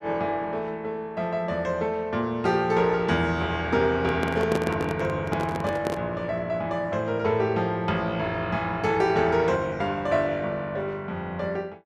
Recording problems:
handling noise; from 4 to 6 s; peak +2 dB vs average level

